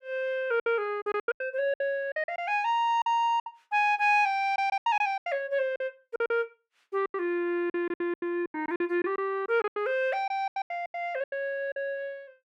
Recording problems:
lost packets; 16% of the sound replaced, filled with silence

